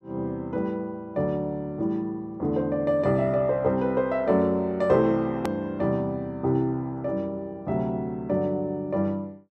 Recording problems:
hard cut with a click; at 5.5 s

